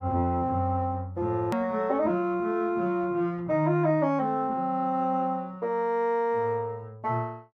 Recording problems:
hard cut with a click; at 1.5 s

